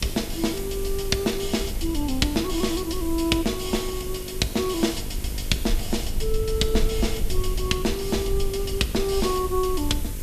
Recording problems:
hum; 50 Hz, harmonics up to 1.1 kHz, SNR 15 dB
hiss; slope +2 dB per octave, SNR 12 dB
low-frequency rumble; below 56 Hz, SNR 7 dB

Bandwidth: 14.5 kHz